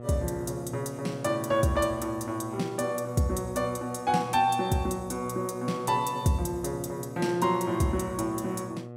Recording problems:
hum; 60 Hz, harmonics up to 1.3 kHz, SNR 13 dB

